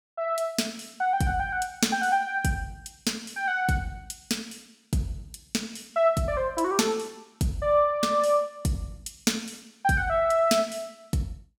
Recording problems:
none

